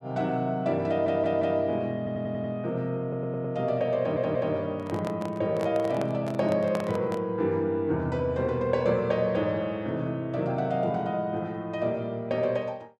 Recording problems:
audio stuttering; 4 times, first at 1 s
handling noise; from 5 to 7 s; peak -2 dB vs average level

